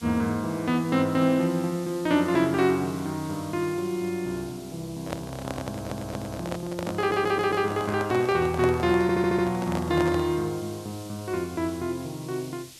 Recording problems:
hiss; SNR 19 dB
microphone handling noise; from 5 to 10 s; peak 0 dB vs average level
audio stuttering; at 5.5 s, at 7 s and at 9 s

